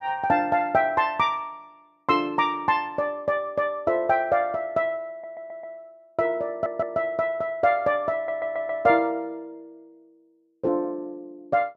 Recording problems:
stutter; at 5 s, at 6.5 s and at 8 s

